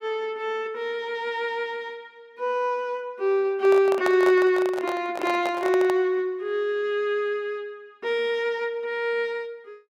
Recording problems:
handling noise; from 3.5 to 6 s; peak +1 dB vs average level

